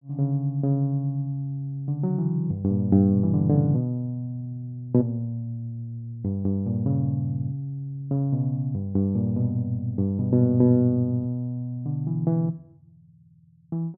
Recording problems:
none

